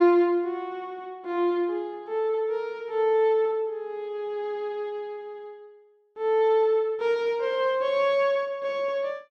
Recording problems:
none

